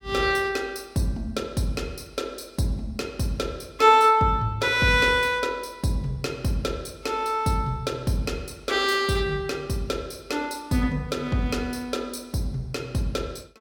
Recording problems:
none

